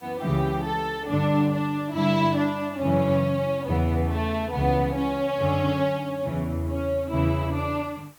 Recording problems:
background hiss; slope -3 dB per octave, SNR 28 dB

